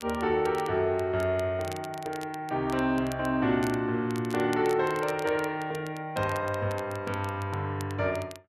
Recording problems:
crackle; vinyl, SNR 19 dB

